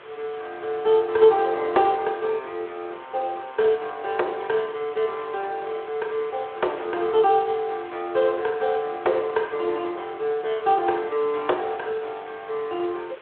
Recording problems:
telephone audio; 320 Hz to 3.5 kHz, Speex
hiss; SNR 20 dB

